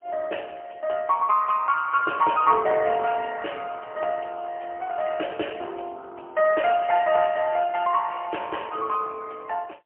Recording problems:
telephone audio; 300 Hz to 3.1 kHz, AMR-NB, then MP3

